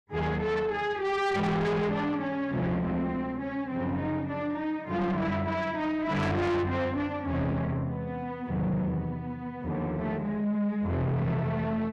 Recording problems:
distorted audio; soft clipping, signal-to-distortion ratio 7 dB

